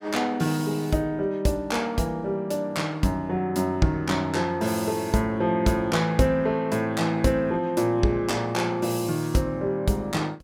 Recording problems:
none

